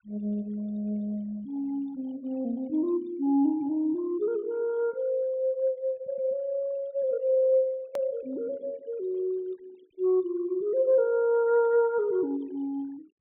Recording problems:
low-pass filter; nothing above 4 kHz
noise reduction artefacts; signal-to-artefact ratio 28 dB
edit click; at 8 s

